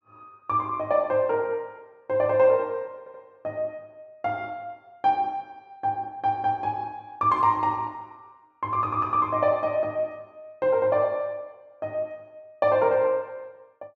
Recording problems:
audio stuttering; at 3 s

